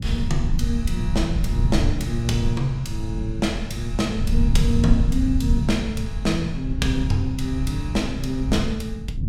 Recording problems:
rumble; below 100 Hz, SNR 1 dB

